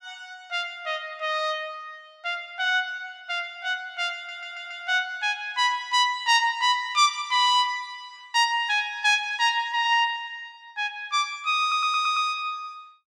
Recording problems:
audio stuttering; at 4 s and at 12 s

